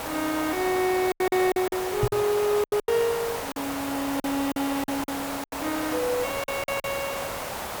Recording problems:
background hiss; SNR 5 dB
lost packets; 11% of the sound replaced, filled with silence
microphone bump; at 2 s; peak +4 dB vs average level

